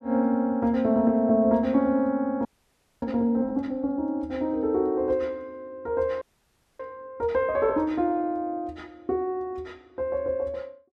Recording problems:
audio freezing; at 2.5 s for 0.5 s and at 6 s for 0.5 s

